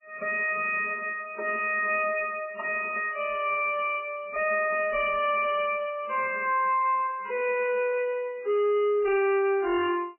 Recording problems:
lossy codec; MP3, log-spectral distance 4 dB, nothing above 2.5 kHz
distorted audio; soft clipping, signal-to-distortion ratio 9 dB

